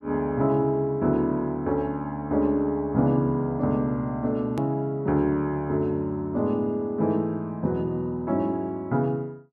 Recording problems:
click at an edit; at 4.5 s

